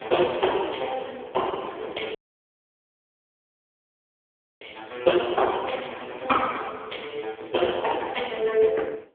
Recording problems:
phone line; 280 Hz to 3.4 kHz, AMR-NB
wind on the microphone; below 610 Hz, SNR 20 dB
dropout; at 2 s for 2.5 s

